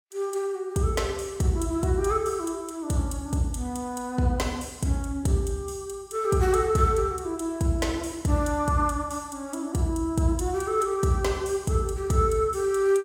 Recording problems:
none

